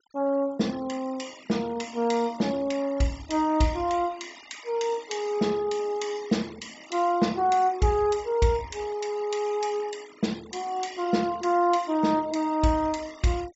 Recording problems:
low-pass filter; nothing above 8 kHz
denoising artefacts; signal-to-artefact ratio 20 dB

